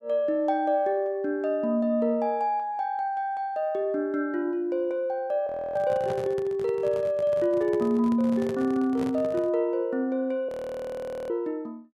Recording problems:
microphone handling noise; from 5.5 to 9.5 s; peak -5 dB vs average level
audio freezing; at 5.5 s and at 10 s for 1 s

